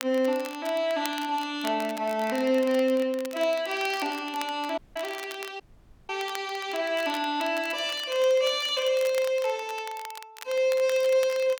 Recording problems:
crackling; vinyl, SNR 16 dB
dropout; at 5 s and at 5.5 s

